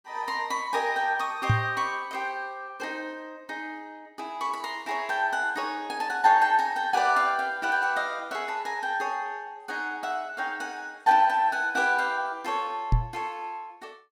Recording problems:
knock on the microphone; at 1.5 s and at 13 s; peak +7 dB vs average level

